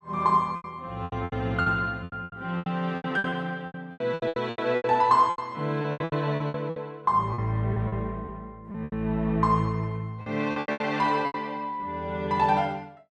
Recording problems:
packet loss; 16% of the sound replaced, filled with repeated pitch periods

